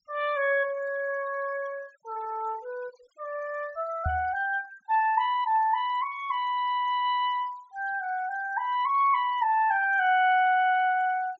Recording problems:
treble cut off; nothing above 7.6 kHz
noise reduction artefacts; signal-to-artefact ratio 25 dB
knock on the microphone; at 4 s; peak -1 dB vs average level

